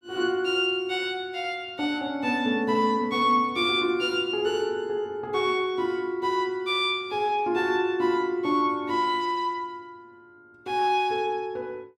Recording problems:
none

